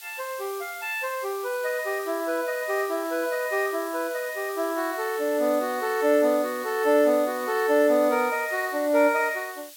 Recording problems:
background hiss; slope +5 dB per octave, SNR 16 dB

